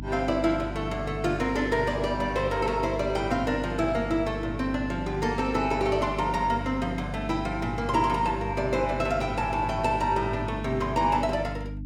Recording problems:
hum; 50 Hz, harmonics up to 300 Hz, SNR 9 dB

